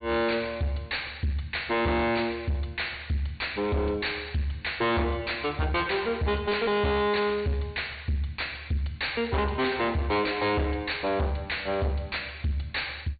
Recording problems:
low-pass filter; nothing above 4.5 kHz
distortion; soft clipping, signal-to-distortion ratio 5 dB

